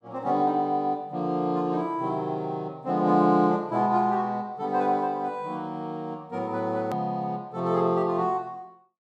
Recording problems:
hard cut with a click; at 7 s

